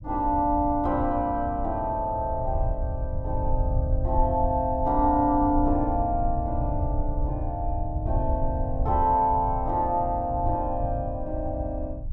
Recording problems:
rumble; below 88 Hz, SNR 5 dB

